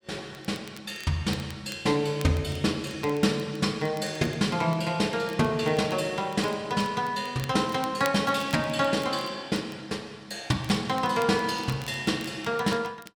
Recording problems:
crackling; vinyl, SNR 21 dB

